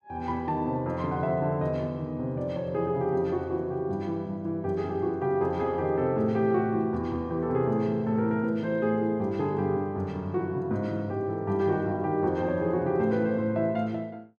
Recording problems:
none

